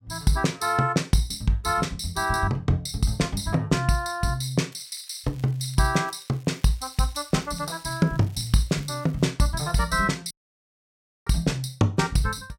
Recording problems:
crackle; from 4.5 to 9 s; loose cable, SNR 27 dB
audio cutting out; at 10 s for 1 s

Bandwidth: 16.5 kHz